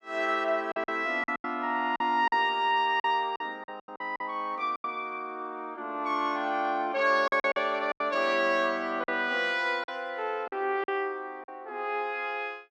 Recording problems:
packet loss; 8% of the sound replaced, filled with silence

